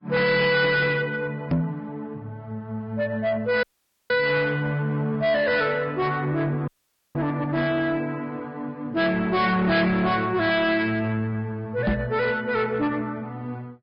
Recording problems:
low-pass filter; nothing above 4.6 kHz
lossy compression; Vorbis, log-spectral distance 2 dB
distorted audio; soft clipping, signal-to-distortion ratio 7 dB
microphone thump; at 1.5 s and at 12 s; peak +4 dB vs average level
audio cutting out; at 3.5 s and at 6.5 s

